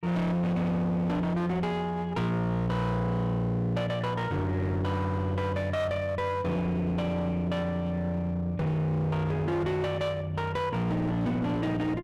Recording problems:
distorted audio; hard clipping, uneven, signal-to-distortion ratio 6 dB

